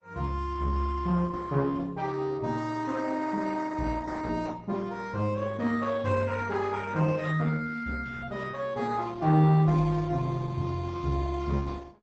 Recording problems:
codec artefacts; Opus, log-spectral distance 4 dB, nothing above 8 kHz

